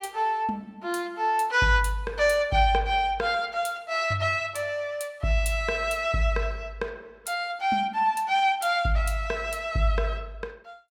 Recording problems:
none

